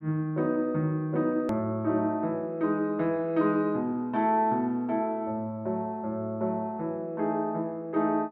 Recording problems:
edit click; at 1.5 s

